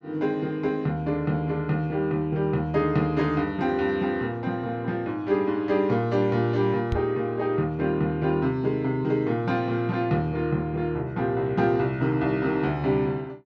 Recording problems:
knock on the microphone; at 7 s; peak 0 dB vs average level

